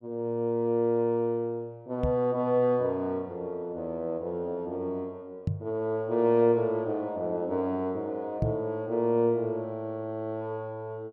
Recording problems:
knock on the microphone; at 2 s, at 5.5 s and at 8.5 s; peak +4 dB vs average level

